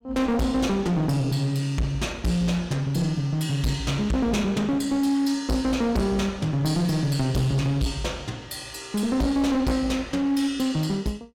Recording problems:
distorted audio; hard clipping, uneven, signal-to-distortion ratio 6 dB

